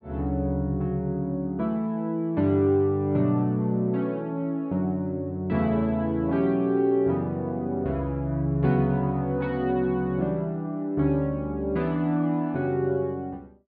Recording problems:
treble missing; nothing above 4.9 kHz

